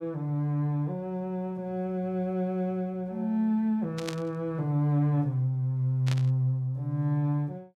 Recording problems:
burst of static; at 4 s and at 6 s; peak -3 dB vs average level

